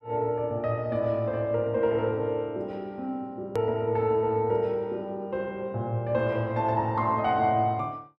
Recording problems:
click at an edit; at 3.5 s

